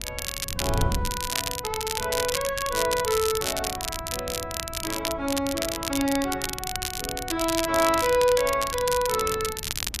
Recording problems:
wind noise; below 150 Hz, SNR 12 dB
crackle; vinyl, SNR 3 dB

